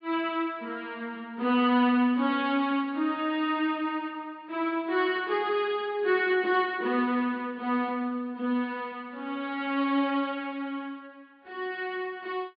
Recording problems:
treble cut off; nothing above 4.9 kHz

